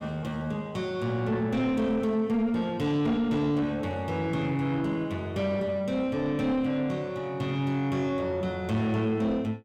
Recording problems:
distorted audio; soft clipping, signal-to-distortion ratio 10 dB

